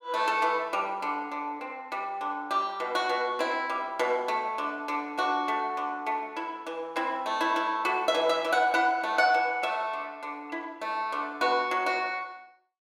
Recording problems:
none

